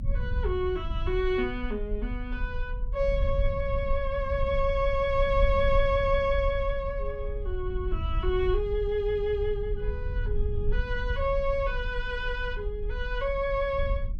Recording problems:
low-frequency rumble; below 62 Hz, SNR 4 dB

